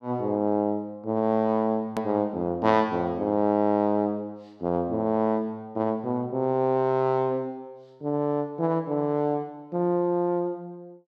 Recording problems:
click at an edit; at 2 s

